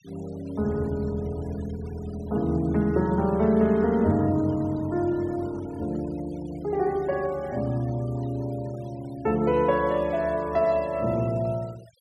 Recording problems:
noise reduction artefacts; signal-to-artefact ratio 24 dB

